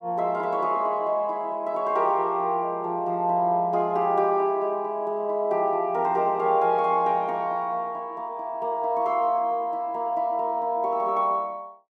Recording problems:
none

